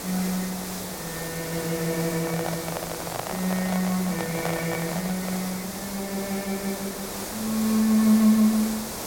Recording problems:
hiss; SNR 7 dB
microphone handling noise; from 2 to 5.5 s; peak 0 dB vs average level

